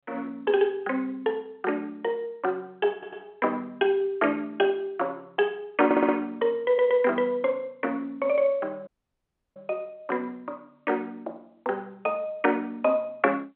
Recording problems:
telephone audio; 280 Hz to 3.4 kHz, G.711
stutter; at 3 s, at 6 s and at 6.5 s
audio cutting out; at 9 s for 0.5 s

